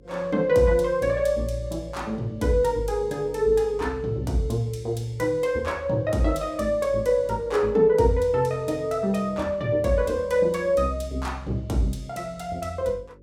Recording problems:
hum; 50 Hz, harmonics up to 550 Hz, SNR 25 dB

